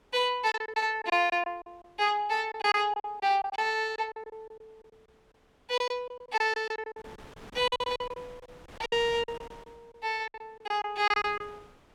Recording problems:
wind noise; below 1.6 kHz, SNR 22 dB
packet loss; 15% of the sound replaced, filled with silence

